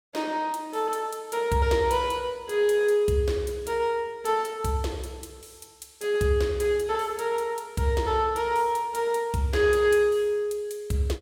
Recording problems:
none

